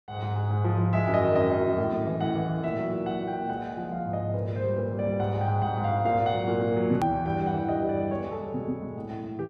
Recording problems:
hard cut with a click; at 7 s

